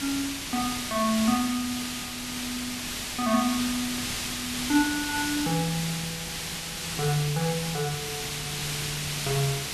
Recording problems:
background hiss; SNR 1 dB

